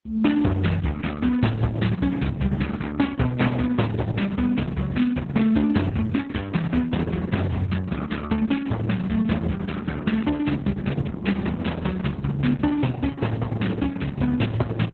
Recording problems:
lossy compression; Opus, then Opus, log-spectral distance 4 dB
distortion; hard clipping, signal-to-distortion ratio 12 dB

